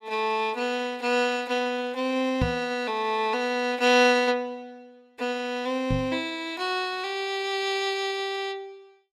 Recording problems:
knock on the microphone; at 2.5 s and at 6 s; peak +3 dB vs average level

